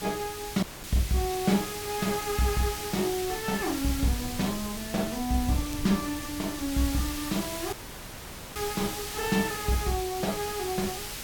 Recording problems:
background hiss; slope 0 dB per octave, SNR 6 dB
wind noise; below 120 Hz, SNR 16 dB
dropout; at 0.5 s and at 7.5 s for 1 s
crackling; from 1 to 3.5 s and from 4 to 6.5 s; loose cable, SNR 22 dB

